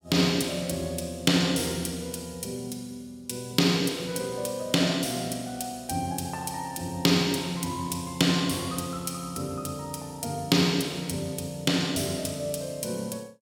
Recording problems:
none

